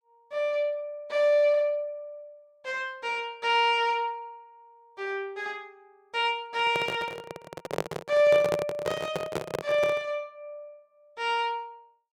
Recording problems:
handling noise; from 6.5 to 10 s; peak +2 dB vs average level

